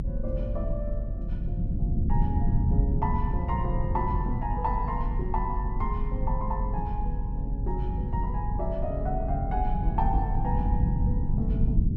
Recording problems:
low-frequency rumble; below 120 Hz, SNR -5 dB

